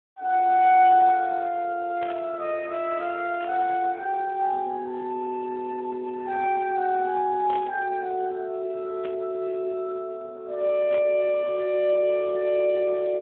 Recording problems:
telephone audio; 280 Hz to 3.5 kHz, Speex
burst of static; 5 times, first at 2 s; peak -8 dB vs average level

